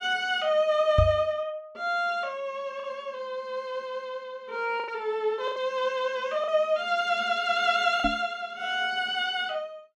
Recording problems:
packet loss; 3% of the sound replaced, filled with the last packet
microphone bump; at 1 s and at 8 s; peak +7 dB vs average level

